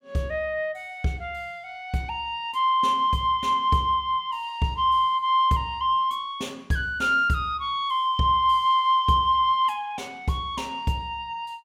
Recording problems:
none

